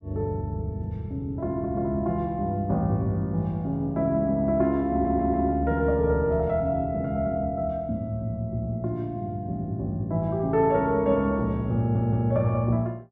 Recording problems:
audio stuttering; at 5 s and at 12 s

